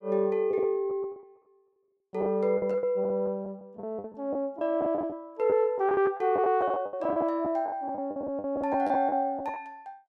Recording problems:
packet loss; 14% of the sound replaced, filled with the last packet

